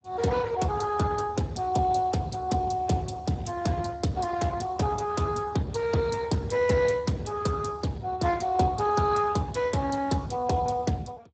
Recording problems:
lossy codec; Speex, log-spectral distance 5 dB, nothing above 8 kHz

